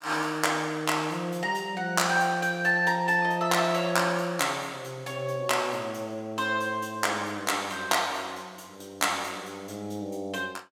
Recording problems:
none

